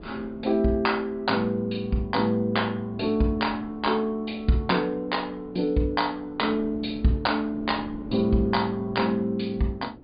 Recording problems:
treble cut off; nothing above 4.9 kHz
wind on the microphone; below 390 Hz, SNR 19 dB

